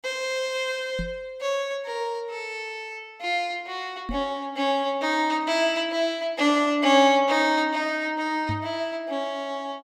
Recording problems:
microphone bump; at 1 s, at 4 s and at 8.5 s; peak -2 dB vs average level

